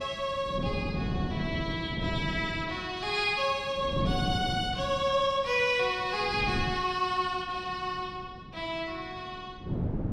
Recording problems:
wind on the microphone; below 260 Hz, SNR 5 dB

